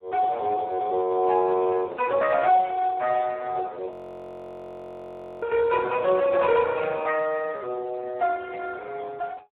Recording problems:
phone line; 340 Hz to 2.8 kHz, Speex
frozen audio; at 4 s for 1.5 s

